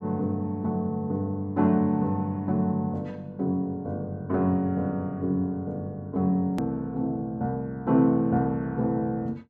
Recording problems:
hard cut with a click; at 6.5 s

